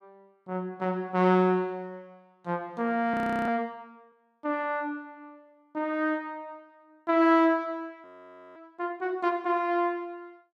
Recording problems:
audio freezing; at 3 s and at 8 s for 0.5 s

